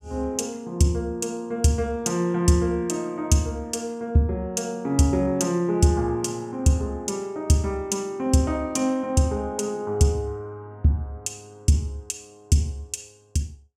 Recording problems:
none

